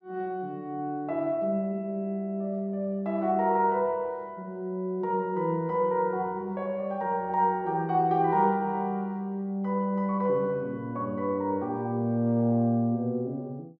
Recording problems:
none

